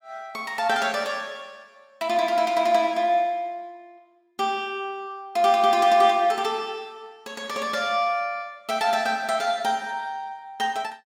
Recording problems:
none

